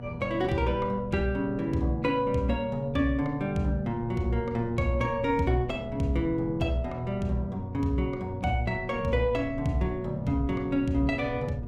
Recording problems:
electrical hum; 60 Hz, harmonics up to 1.2 kHz, SNR 12 dB
wind noise; below 160 Hz, SNR 15 dB

